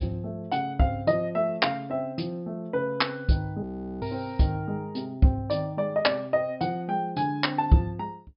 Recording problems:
treble missing; nothing above 5.5 kHz
frozen audio; at 3.5 s

